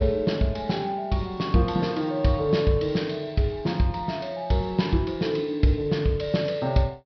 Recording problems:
low-pass filter; nothing above 5.5 kHz

